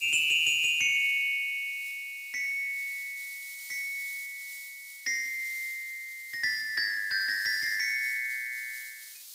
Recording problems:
lossy codec; Opus, log-spectral distance 2 dB, nothing above 15.6 kHz
hiss; SNR 16 dB

